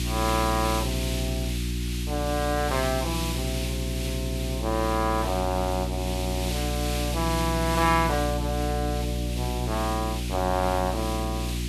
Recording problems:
electrical hum; 60 Hz, harmonics up to 360 Hz, SNR 2 dB
hiss; SNR 6 dB

